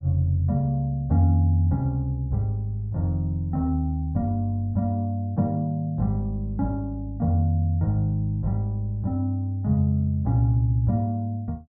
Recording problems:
none

